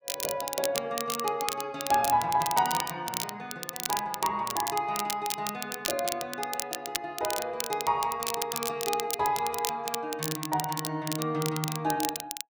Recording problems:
crackling; vinyl, SNR 4 dB

